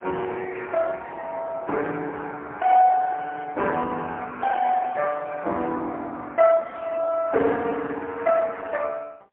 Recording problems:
phone line; 320 Hz to 3.1 kHz, AMR-NB, then MP3

